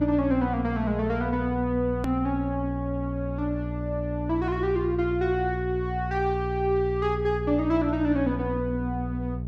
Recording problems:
hum; 60 Hz, harmonics up to 480 Hz, SNR 6 dB
hard cut with a click; at 2 s

